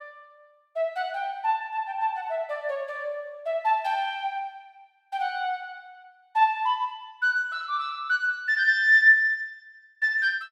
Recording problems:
none

